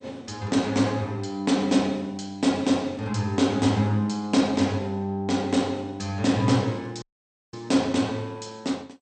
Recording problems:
lossy codec; MP2, log-spectral distance 3 dB, nothing above 8.5 kHz
audio cutting out; at 7 s for 0.5 s

